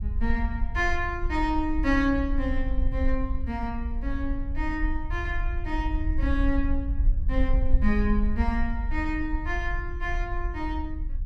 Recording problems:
low-frequency rumble; below 56 Hz, SNR 1 dB

